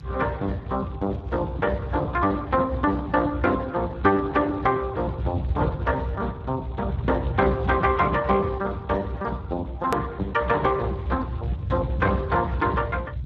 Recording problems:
codec artefacts; Speex, log-spectral distance 3 dB, nothing above 13.1 kHz
low-frequency rumble; below 120 Hz, strongest tone 64 Hz, SNR 8 dB
hard cut with a click; at 10 s

